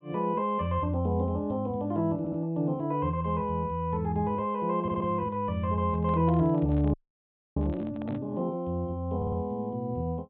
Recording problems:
treble missing; nothing above 4 kHz
audio stuttering; at 2 s, at 5 s and at 9 s
handling noise; from 6 to 8 s; peak -11 dB vs average level
audio freezing; at 7 s for 0.5 s

